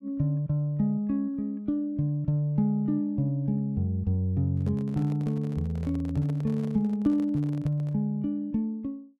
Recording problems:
handling noise; from 4.5 to 8 s; peak -11 dB vs average level

